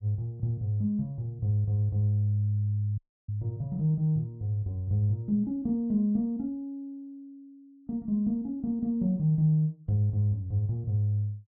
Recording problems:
audio cutting out; at 3 s

